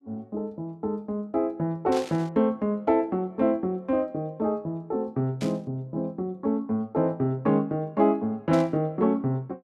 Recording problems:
burst of static; at 2 s, at 5.5 s and at 8.5 s; peak -7 dB vs average level

